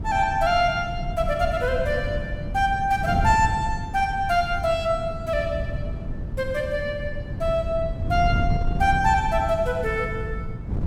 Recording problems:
wind noise; below 140 Hz, SNR 6 dB

